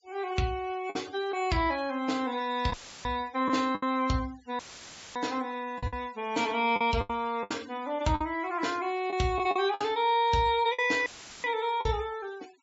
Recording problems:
treble cut off; nothing above 8 kHz
noise reduction artefacts; signal-to-artefact ratio 21 dB
packet loss; 6% of the sound replaced, filled with the last packet
dropout; at 2.5 s, at 4.5 s for 0.5 s and at 11 s; filled with static

